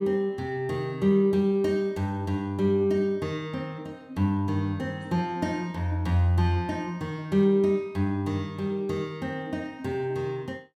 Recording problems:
none

